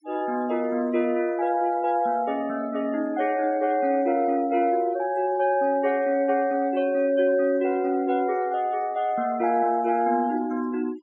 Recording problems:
noise reduction artefacts; signal-to-artefact ratio 23 dB

